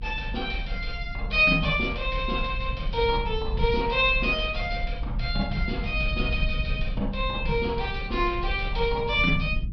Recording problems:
treble cut off; nothing above 5.5 kHz
low-frequency rumble; below 68 Hz, strongest tone 36 Hz, SNR 7 dB

